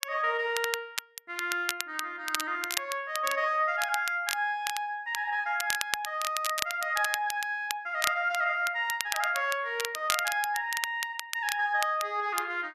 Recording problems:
crackling; vinyl, SNR 6 dB

